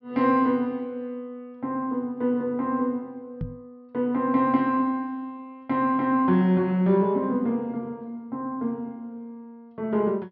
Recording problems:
treble missing; nothing above 5.5 kHz
microphone thump; at 3.5 s; peak -2 dB vs average level

